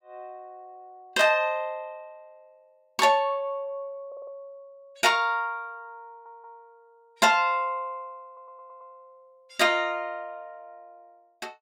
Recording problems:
audio stuttering; at 4 s, at 6 s and at 8.5 s

